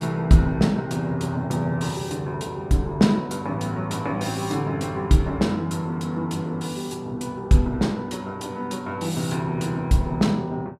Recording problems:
none

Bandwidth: 15 kHz